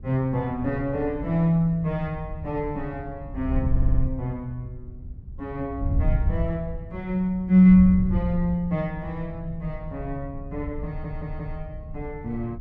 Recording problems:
wind on the microphone; below 86 Hz, SNR 8 dB
stutter; at 3.5 s and at 11 s

